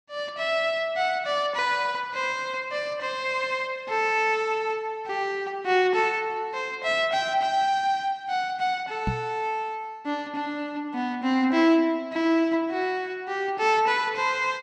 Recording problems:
knock on the microphone; at 9 s; peak +1 dB vs average level

